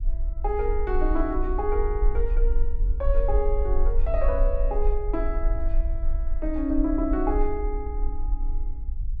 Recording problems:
rumble; below 42 Hz, strongest tone 20 Hz, SNR 0 dB

